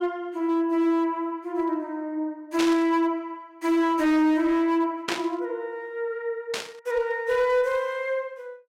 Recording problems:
distortion; hard clipping, signal-to-distortion ratio 12 dB
burst of static; at 2.5 s, at 5 s and at 6.5 s; peak +2 dB vs average level

